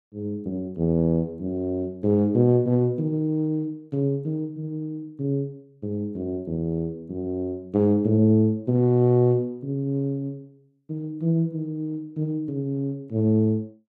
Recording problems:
none

